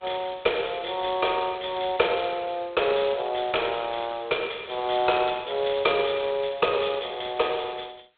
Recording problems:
telephone audio; 370 Hz to 3.5 kHz, G.726

